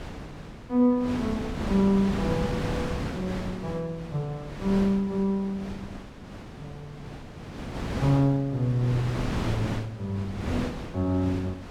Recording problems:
wind on the microphone; below 640 Hz, SNR 7 dB

